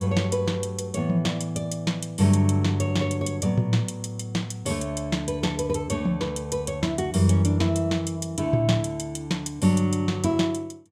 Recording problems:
none

